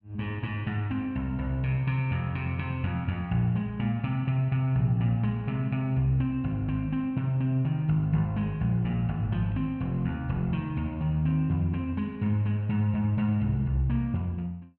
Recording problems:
none

